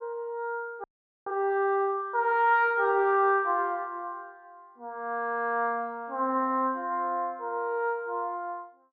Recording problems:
low-pass filter; nothing above 5.5 kHz
frozen audio; at 1 s

